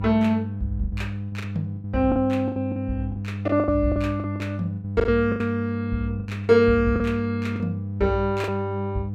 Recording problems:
electrical hum; 50 Hz, harmonics up to 500 Hz, SNR 6 dB
lost packets; 12% of the sound replaced, filled with the last packet

